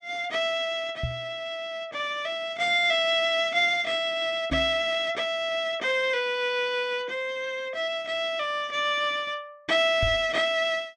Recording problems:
microphone thump; at 1 s, at 4.5 s and at 10 s; peak -1 dB vs average level

